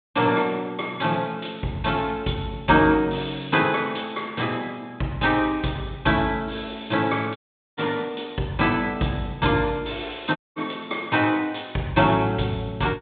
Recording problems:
low-pass filter; nothing above 4 kHz
audio cutting out; at 7.5 s and at 10 s

